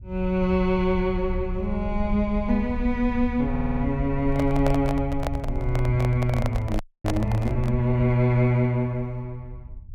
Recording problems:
rumble; below 68 Hz, SNR 8 dB
audio stuttering; at 3.5 s
handling noise; from 4.5 to 8 s; peak 0 dB vs average level
frozen audio; at 7 s

